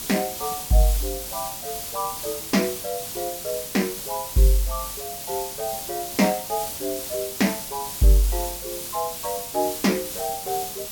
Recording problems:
hiss; SNR 5 dB

